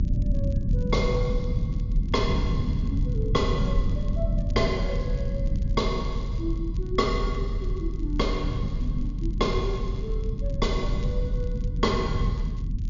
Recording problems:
low-pass filter; nothing above 7 kHz
rumble; below 120 Hz, strongest tone 40 Hz, SNR -2 dB
crackling; vinyl, SNR 27 dB

